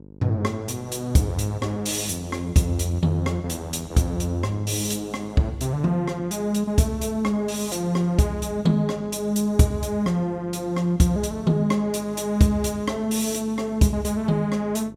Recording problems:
hum; 50 Hz, harmonics up to 600 Hz, SNR 21 dB

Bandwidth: 16 kHz